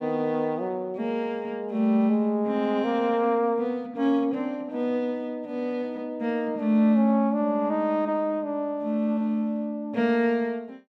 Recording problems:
none

